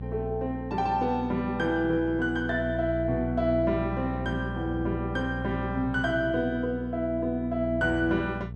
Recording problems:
hum; 60 Hz, harmonics up to 480 Hz, SNR 8 dB

